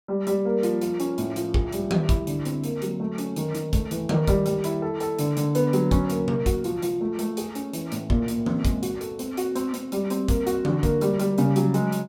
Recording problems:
none

